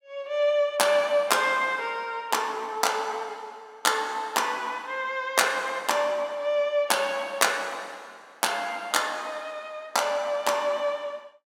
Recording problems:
none

